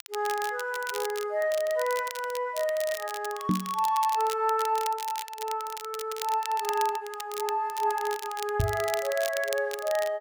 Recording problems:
crackling; vinyl, SNR 11 dB
knock on the microphone; at 3.5 s and at 8.5 s; peak +6 dB vs average level

